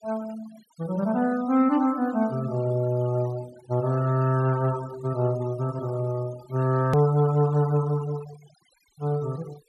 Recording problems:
noise reduction artefacts; signal-to-artefact ratio 21 dB
click at an edit; at 7 s

